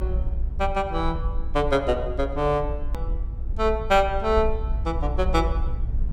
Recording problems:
low-frequency rumble; below 58 Hz, SNR 5 dB
click at an edit; at 3 s

